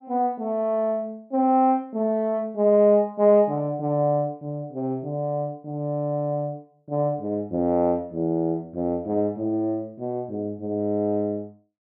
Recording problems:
none

